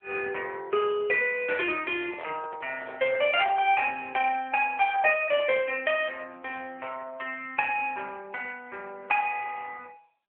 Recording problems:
phone line; 320 Hz to 3.7 kHz, AMR-NB
handling noise; from 2 to 4 s; peak -10 dB vs average level

